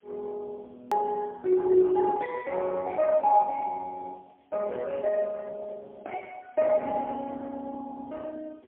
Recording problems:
telephone audio; 300 Hz to 2.2 kHz, AMR-NB, then MP3
hiss; SNR 45 dB
edit click; at 1 s

